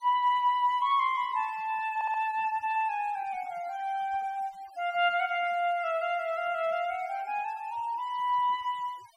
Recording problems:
noise reduction artefacts; signal-to-artefact ratio 25 dB
audio stuttering; at 2 s

